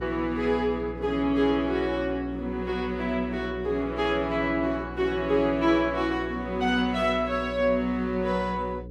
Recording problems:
hum; 60 Hz, harmonics up to 540 Hz, SNR 13 dB

